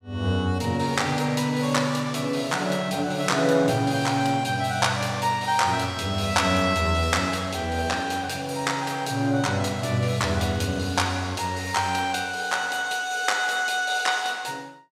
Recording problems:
none

